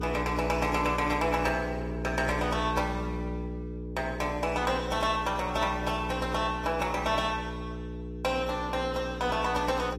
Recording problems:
lossy codec; AAC, log-spectral distance 3 dB, nothing above 14.7 kHz
hum; 60 Hz, harmonics up to 480 Hz, SNR 7 dB

